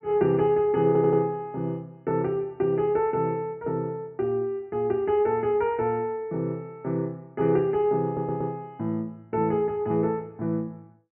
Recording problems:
treble cut off; nothing above 3 kHz
audio stuttering; at 1 s and at 8 s

